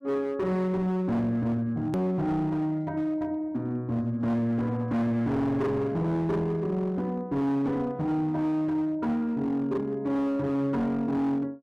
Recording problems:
distortion; hard clipping, signal-to-distortion ratio 10 dB
click at an edit; at 2 s

